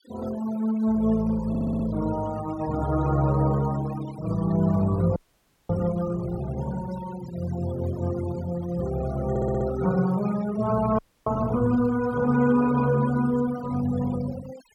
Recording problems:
denoising artefacts; signal-to-artefact ratio 17 dB
stutter; at 1.5 s and at 9.5 s
frozen audio; at 5 s for 0.5 s and at 11 s

